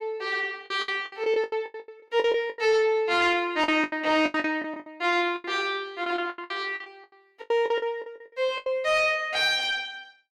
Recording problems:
distortion; soft clipping, signal-to-distortion ratio 11 dB
lost packets; 17% of the sound replaced, filled with the last packet

